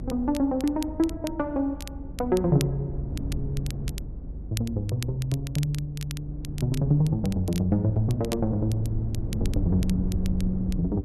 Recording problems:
rumble; below 120 Hz, SNR 8 dB
crackle; vinyl, SNR 16 dB

